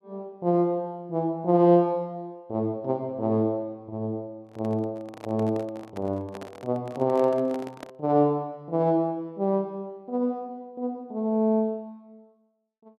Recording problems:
microphone handling noise; from 4.5 to 8 s; peak -8 dB vs average level

